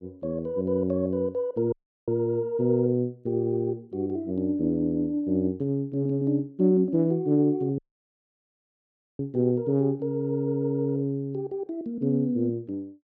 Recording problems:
audio cutting out; at 1.5 s and at 8 s for 1.5 s

